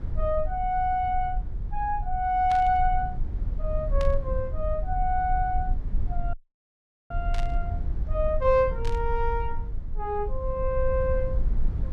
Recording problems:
low-frequency rumble; below 56 Hz, SNR 5 dB
burst of static; 4 times, first at 2.5 s; peak -8 dB vs average level
audio cutting out; at 6.5 s for 1 s

